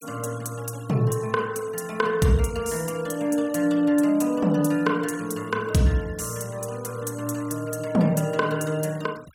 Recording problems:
noise reduction artefacts; signal-to-artefact ratio 22 dB

